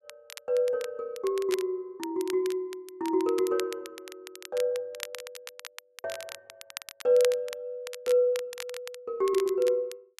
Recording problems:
crackle; vinyl, SNR 15 dB

